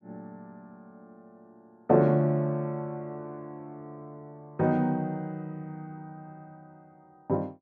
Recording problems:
none

